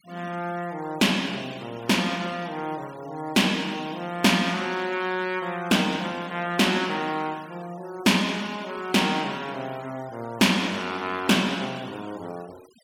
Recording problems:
denoising artefacts; signal-to-artefact ratio 21 dB

